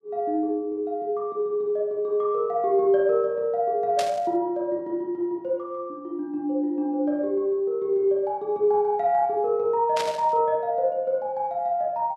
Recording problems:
static burst; at 4 s and at 10 s; peak -2 dB vs average level

